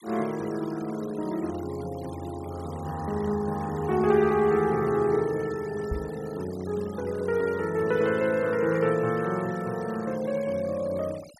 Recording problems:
noise reduction artefacts; signal-to-artefact ratio 20 dB
knock on the microphone; at 6 s; peak -1 dB vs average level

